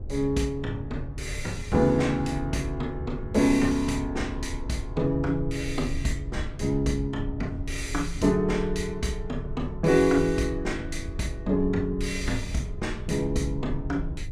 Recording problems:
rumble; below 80 Hz, SNR 10 dB
wind on the microphone; below 350 Hz, SNR 22 dB

